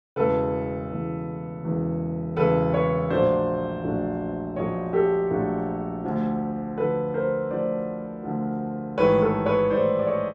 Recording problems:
none

